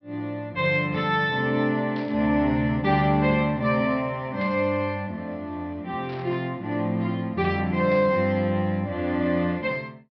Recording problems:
treble cut off; nothing above 5.5 kHz
burst of static; 4 times, first at 2 s; peak -15 dB vs average level

